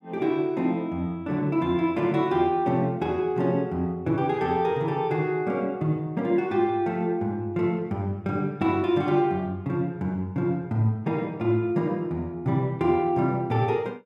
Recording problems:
none

